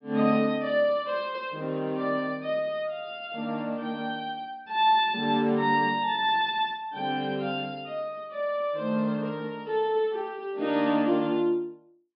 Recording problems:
low-pass filter; nothing above 5.5 kHz

